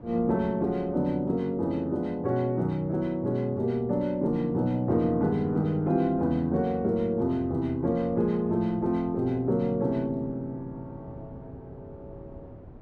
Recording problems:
wind noise; below 320 Hz, SNR 21 dB

